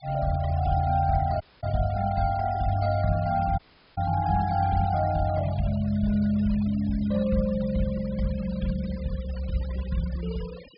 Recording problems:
low-pass filter; nothing above 5.5 kHz
denoising artefacts; signal-to-artefact ratio 20 dB
audio cutting out; at 1.5 s and at 3.5 s

